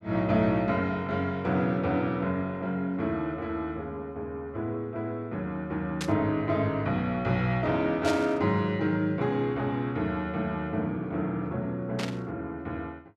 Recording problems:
burst of static; at 6 s, at 8 s and at 12 s; peak -1 dB vs average level

